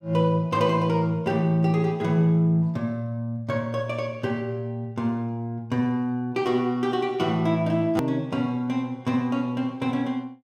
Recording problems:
hard cut with a click; at 8 s

